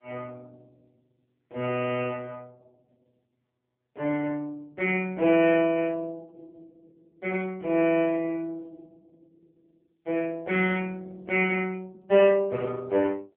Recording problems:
telephone audio; 220 Hz to 3.1 kHz, AMR-NB

